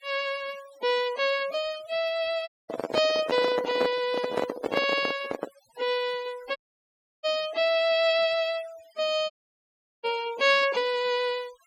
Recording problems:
denoising artefacts; signal-to-artefact ratio 18 dB
dropout; at 2.5 s, at 6.5 s for 0.5 s and at 9.5 s for 0.5 s
handling noise; from 2.5 to 5.5 s; peak +2 dB vs average level

